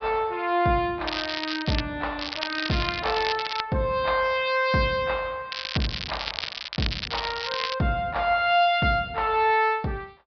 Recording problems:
low-pass filter; nothing above 5.5 kHz
crackling; at 1 s, from 2 to 3.5 s and from 5.5 to 8 s; loose cable, SNR 6 dB

